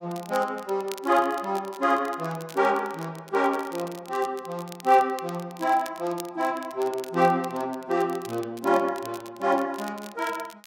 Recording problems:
crackling; vinyl, SNR 20 dB

